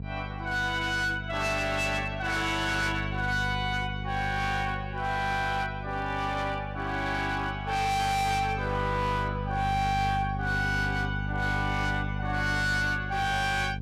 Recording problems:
distortion; hard clipping, signal-to-distortion ratio 7 dB
hum; 50 Hz, harmonics up to 500 Hz, SNR 7 dB

